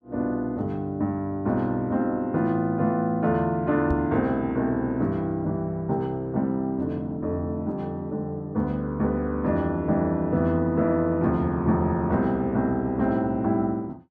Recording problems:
microphone bump; at 4 s; peak 0 dB vs average level

